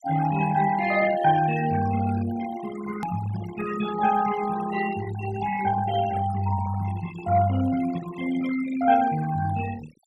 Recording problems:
denoising artefacts; signal-to-artefact ratio 13 dB
hard cut with a click; at 3 s

